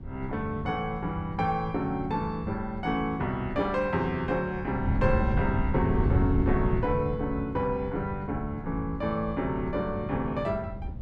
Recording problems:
wind noise; below 150 Hz, SNR 4 dB

